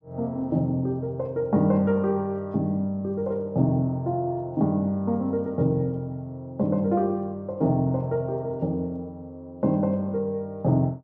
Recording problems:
none

